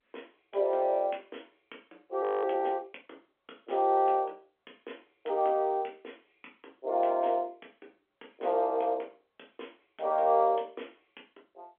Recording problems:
phone line; 280 Hz to 3.4 kHz, G.711
frozen audio; at 2 s

